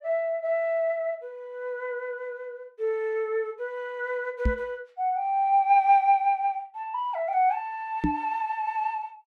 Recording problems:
knock on the microphone; at 4.5 s and at 8 s; peak +5 dB vs average level

